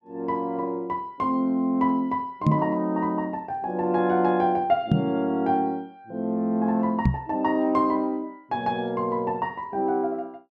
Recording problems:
knock on the microphone; at 2.5 s, at 5 s and at 7 s; peak +8 dB vs average level

